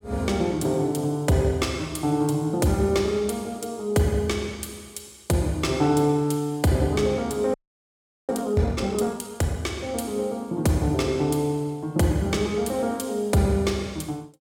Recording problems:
frozen audio; at 7.5 s for 0.5 s

